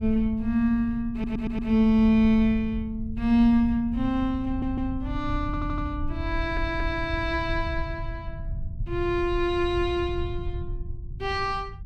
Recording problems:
low-frequency rumble; below 90 Hz, SNR 10 dB
stutter; 4 times, first at 1 s

